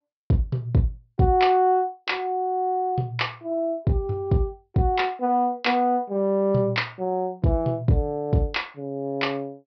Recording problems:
treble missing; nothing above 5.5 kHz

